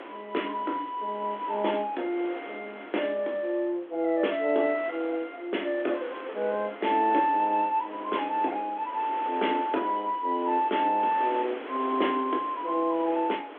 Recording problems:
phone line; 240 Hz to 3.6 kHz, G.726
wind on the microphone; below 1.7 kHz, SNR 14 dB

